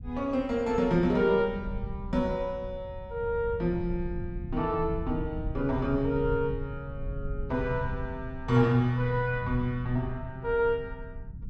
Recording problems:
rumble; below 110 Hz, SNR 10 dB

